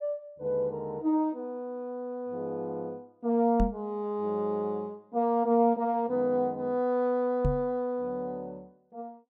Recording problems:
microphone bump; at 3.5 s and at 7.5 s; peak +5 dB vs average level

